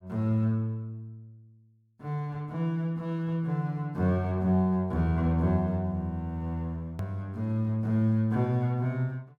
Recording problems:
hard cut with a click; at 7 s

